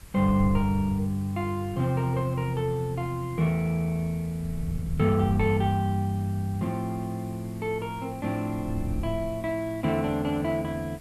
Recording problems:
background hiss; slope -3 dB per octave, SNR 24 dB
wind noise; below 100 Hz, SNR 11 dB

